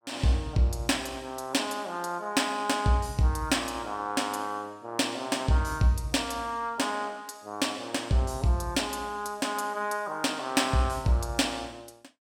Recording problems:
none

